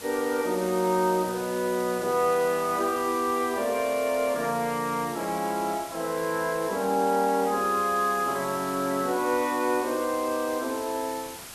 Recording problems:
background hiss; slope -1 dB per octave, SNR 13 dB

